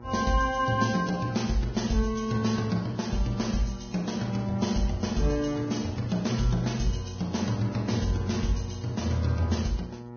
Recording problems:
lossy compression; Vorbis, log-spectral distance 4 dB, nothing above 6.5 kHz
hum; 60 Hz, harmonics up to 1.3 kHz, SNR 15 dB

